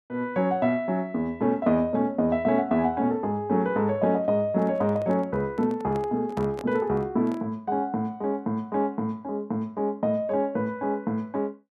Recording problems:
microphone handling noise; from 4.5 to 7.5 s; peak -8 dB vs average level

